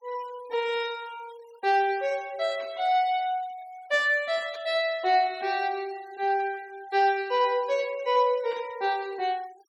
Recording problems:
denoising artefacts; signal-to-artefact ratio 23 dB
burst of static; at 2.5 s, at 4.5 s and at 8.5 s; peak -15 dB vs average level

